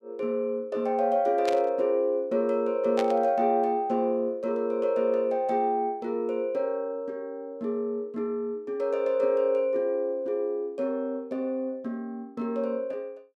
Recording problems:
burst of static; at 1.5 s and at 3 s; peak -3 dB vs average level

